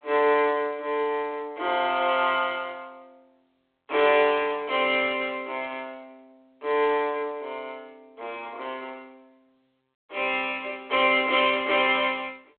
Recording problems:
telephone audio; 300 Hz to 3.7 kHz, G.726

